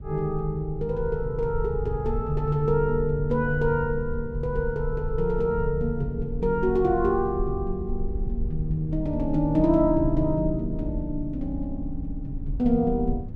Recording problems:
low-frequency rumble; below 68 Hz, SNR 8 dB

